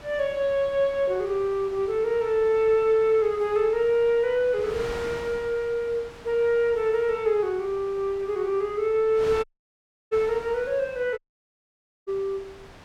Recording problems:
wind on the microphone; below 2.1 kHz, SNR 19 dB
audio cutting out; at 9.5 s for 0.5 s and at 11 s for 1 s

